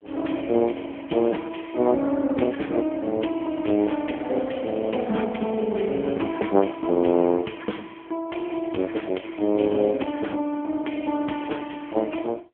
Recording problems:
telephone audio; 170 Hz to 3.1 kHz, AMR-NB

